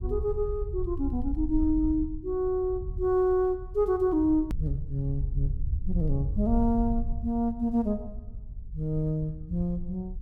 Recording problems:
low-frequency rumble; below 70 Hz, SNR 7 dB
hard cut with a click; at 4.5 s

